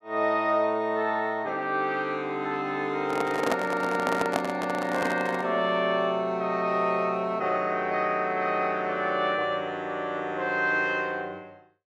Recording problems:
handling noise; from 3 to 5.5 s; peak +4 dB vs average level

